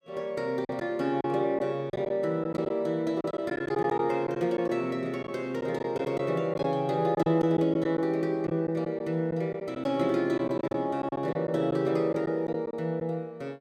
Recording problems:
lost packets; 7% of the sound replaced, filled with silence

